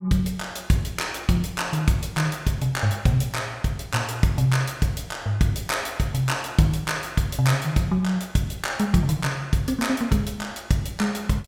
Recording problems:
none

